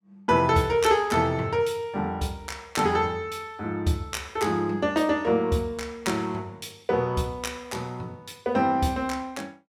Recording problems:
none

